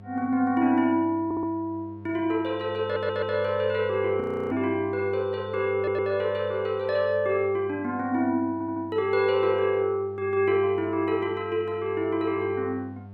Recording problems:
hum; 50 Hz, harmonics up to 900 Hz, SNR 17 dB
audio stuttering; 4 times, first at 1.5 s
audio freezing; at 4 s

